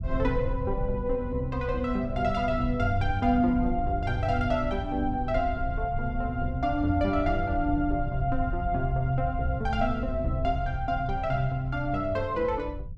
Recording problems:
low-frequency rumble; below 86 Hz, SNR 7 dB

